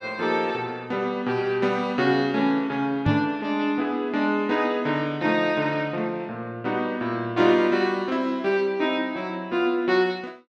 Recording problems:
microphone thump; at 3 s; peak +4 dB vs average level

